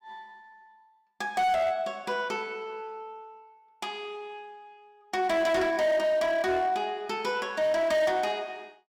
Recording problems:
distortion; hard clipping, signal-to-distortion ratio 10 dB

